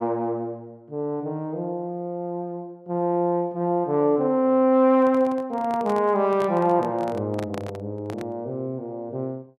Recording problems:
handling noise; from 5 to 8.5 s; peak -6 dB vs average level

